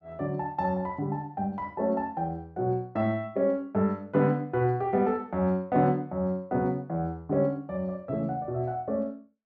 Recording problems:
none

